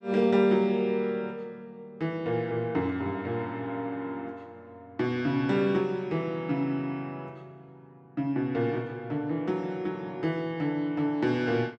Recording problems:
none

